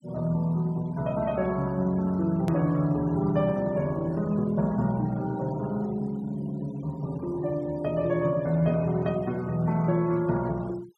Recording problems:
noise reduction artefacts; signal-to-artefact ratio 24 dB
click at an edit; at 2.5 s

